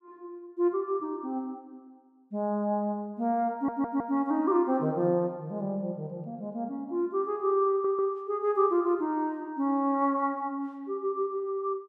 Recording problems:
audio stuttering; at 3.5 s and at 7.5 s

